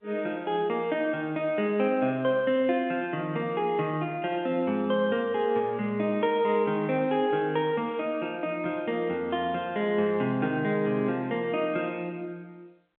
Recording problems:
phone line; 150 Hz to 3.5 kHz, G.711

